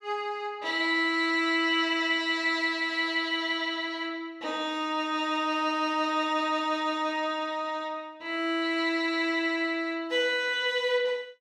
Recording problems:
none

